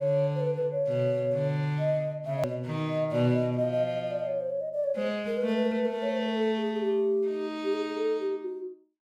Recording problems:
click at an edit; at 2.5 s

